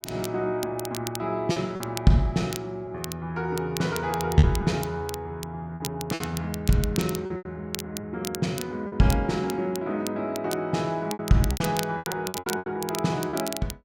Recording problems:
crackle; vinyl, SNR 11 dB
lost packets; 7% of the sound replaced, filled with repeated pitch periods

